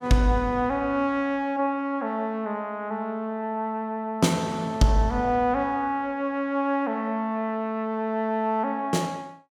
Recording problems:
none

